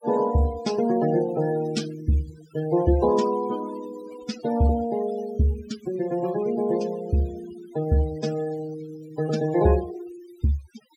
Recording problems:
denoising artefacts; signal-to-artefact ratio 16 dB

